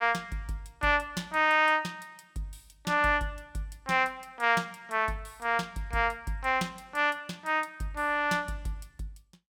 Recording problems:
none

